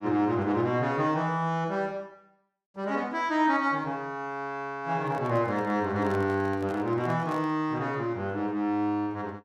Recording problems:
microphone handling noise; from 5 to 7.5 s; peak -8 dB vs average level

